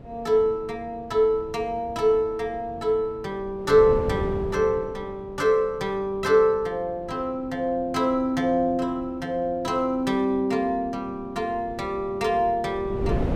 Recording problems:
wind on the microphone; below 310 Hz, SNR 15 dB

